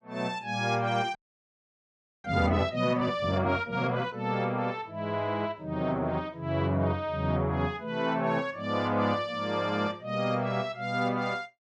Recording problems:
frozen audio; at 1 s for 1 s

